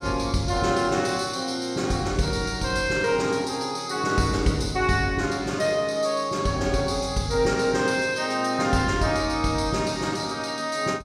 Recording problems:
none

